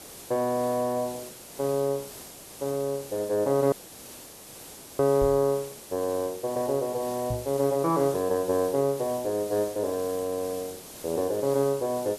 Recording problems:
hiss; SNR 14 dB
audio cutting out; at 3.5 s for 1.5 s
knock on the microphone; at 5 s and at 7.5 s; peak -2 dB vs average level

